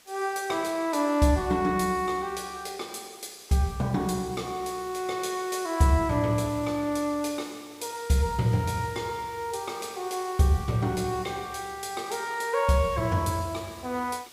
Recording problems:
hiss; slope 0 dB per octave, SNR 22 dB

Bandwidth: 15.5 kHz